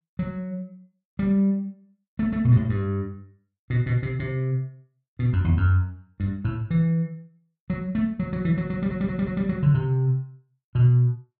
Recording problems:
stutter; at 8.5 s

